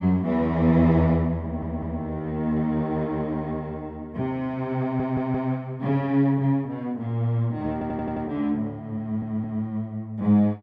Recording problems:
audio stuttering; 4 times, first at 1.5 s

